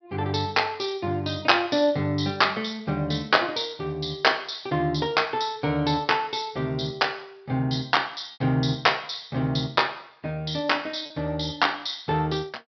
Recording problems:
treble missing; nothing above 5.5 kHz
packet loss; 0.6% of the sound replaced, filled with repeated pitch periods

